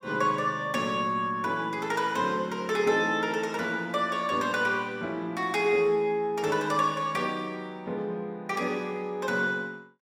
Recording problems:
none

